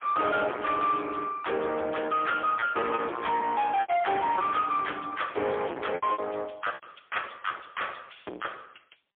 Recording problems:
phone line; 300 Hz to 3.4 kHz, AMR-NB, then MP3
distorted audio; soft clipping, signal-to-distortion ratio 6 dB
lost packets; 6% of the sound replaced, filled with repeated pitch periods

